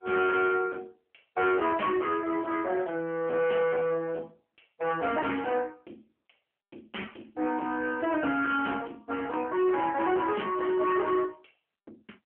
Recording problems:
telephone audio; 240 Hz to 3.2 kHz, AMR-NB
distortion; hard clipping, uneven, signal-to-distortion ratio 10 dB

